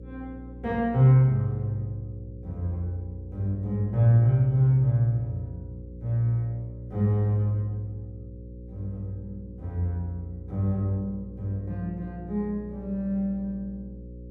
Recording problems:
hum; 60 Hz, harmonics up to 540 Hz, SNR 16 dB

